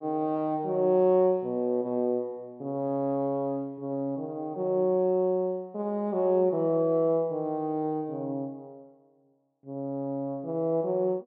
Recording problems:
none

